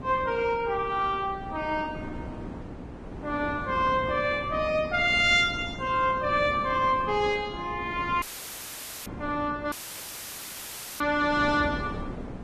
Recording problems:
lossy codec; Vorbis, log-spectral distance 2 dB
hum; 60 Hz, harmonics up to 1.4 kHz, SNR 21 dB
wind on the microphone; below 440 Hz, SNR 13 dB
audio cutting out; at 8 s for 1 s and at 9.5 s for 1.5 s

